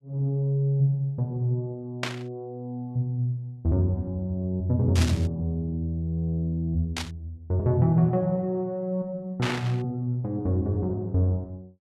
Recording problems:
burst of static; 4 times, first at 2 s; peak +2 dB vs average level

